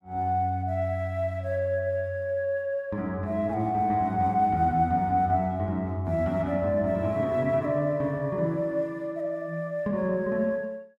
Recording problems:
none

